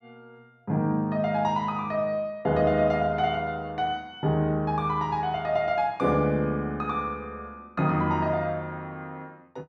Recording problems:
none

